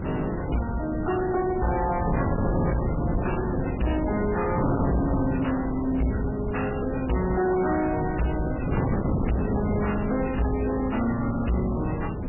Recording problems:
lossy compression; MP3, log-spectral distance 6 dB, nothing above 2.9 kHz
distorted audio; soft clipping, signal-to-distortion ratio 7 dB
wind noise; below 350 Hz, SNR 2 dB

